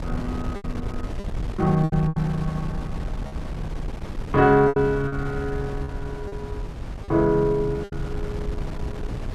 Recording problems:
wind on the microphone; below 160 Hz, SNR 10 dB
lost packets; 7% of the sound replaced, filled with repeated pitch periods

